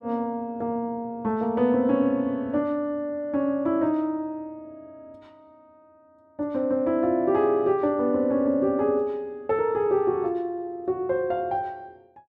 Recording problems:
none

